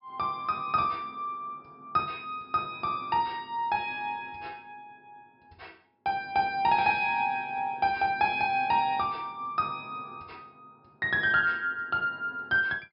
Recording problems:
treble cut off; nothing above 5.5 kHz

